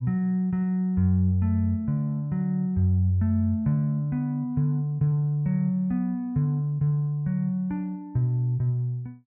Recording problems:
none

